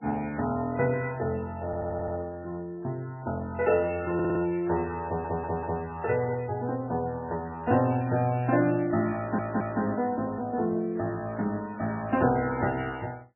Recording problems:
lossy codec; MP3, log-spectral distance 2 dB, nothing above 2.7 kHz
audio stuttering; 4 times, first at 1.5 s

